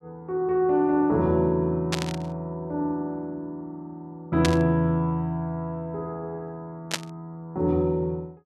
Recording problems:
static burst; at 2 s, at 4.5 s and at 7 s; peak +4 dB vs average level

